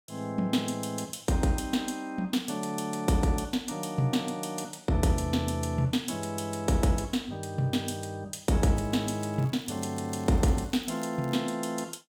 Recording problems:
crackle; from 9 to 11 s; loose cable, SNR 26 dB

